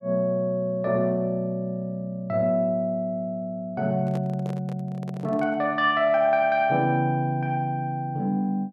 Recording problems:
handling noise; from 4 to 5.5 s; peak -9 dB vs average level

